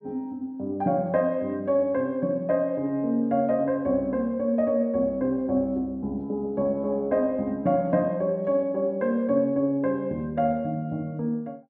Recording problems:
none

